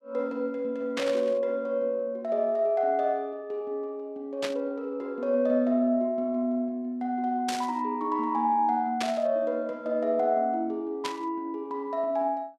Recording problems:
static burst; 5 times, first at 1 s; peak 0 dB vs average level

